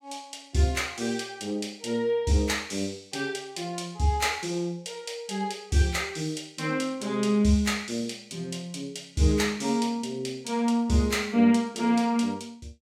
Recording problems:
none

